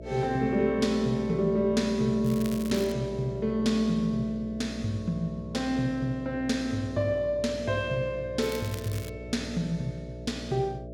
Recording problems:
hum; 60 Hz, harmonics up to 660 Hz, SNR 12 dB
crackling; at 2 s and at 8.5 s; loose cable, SNR 15 dB

